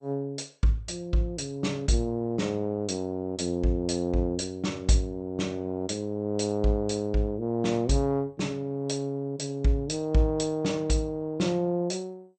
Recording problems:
codec artefacts; MP2, log-spectral distance 3 dB, nothing above 8.5 kHz

